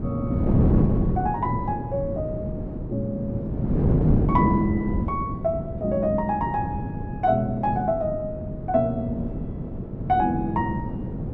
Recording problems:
wind noise; below 270 Hz, SNR 1 dB

